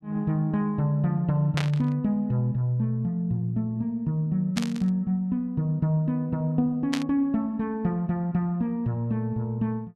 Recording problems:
burst of static; at 1.5 s, at 4.5 s and at 7 s; peak 0 dB vs average level

